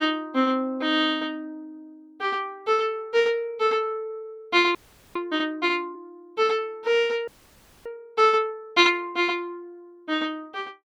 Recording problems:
audio freezing; at 5 s and at 7.5 s for 0.5 s

